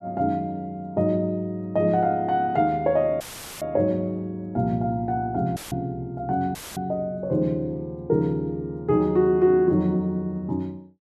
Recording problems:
audio cutting out; at 3 s, at 5.5 s and at 6.5 s; filled with static

